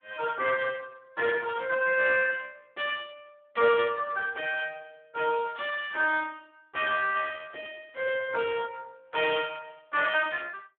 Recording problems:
telephone audio; 280 Hz to 3.5 kHz, Speex

